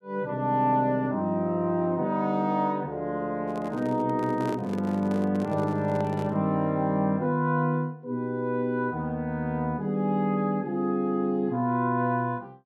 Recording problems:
handling noise; from 3.5 to 6.5 s; peak -5 dB vs average level

